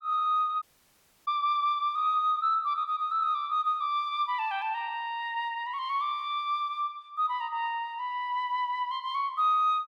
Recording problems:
dropout; at 0.5 s for 0.5 s

